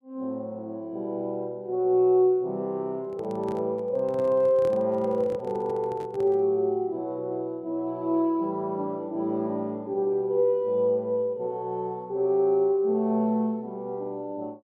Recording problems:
microphone handling noise; from 3 to 6.5 s; peak -8 dB vs average level

